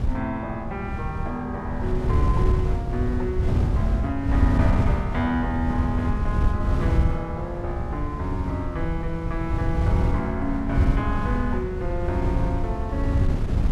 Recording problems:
wind noise; below 110 Hz, SNR -3 dB

